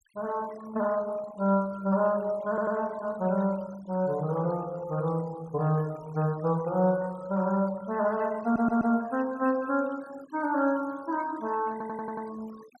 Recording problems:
denoising artefacts; signal-to-artefact ratio 21 dB
audio stuttering; at 2.5 s, at 8.5 s and at 12 s

